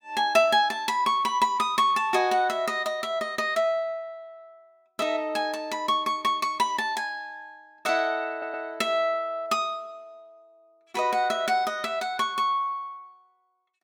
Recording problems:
stutter; at 8.5 s

